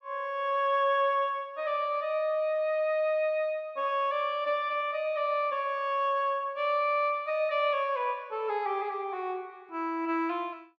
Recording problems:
none

